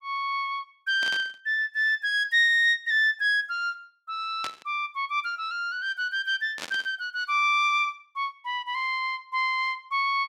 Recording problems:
burst of static; at 1 s, at 4.5 s and at 6.5 s; peak -5 dB vs average level

